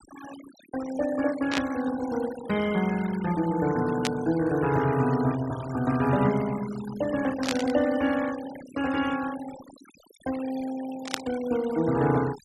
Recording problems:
noise reduction artefacts; signal-to-artefact ratio 15 dB
static burst; 4 times, first at 1.5 s; peak +3 dB vs average level

